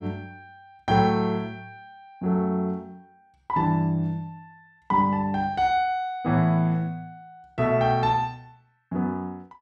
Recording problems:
none

